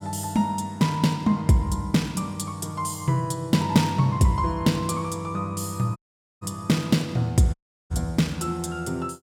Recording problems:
dropout; at 6 s and at 7.5 s

